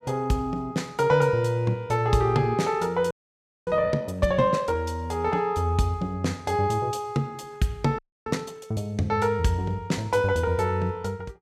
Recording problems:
audio freezing; at 3 s for 0.5 s and at 8 s

